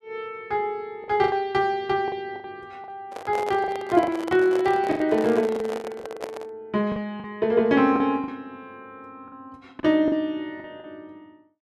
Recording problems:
lost packets; 9% of the sound replaced, filled with the last packet
microphone handling noise; from 3 to 6.5 s; peak -4 dB vs average level

